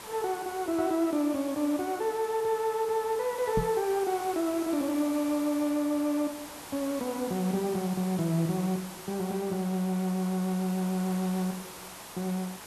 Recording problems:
hiss; SNR 13 dB
microphone bump; at 3.5 s; peak +2 dB vs average level

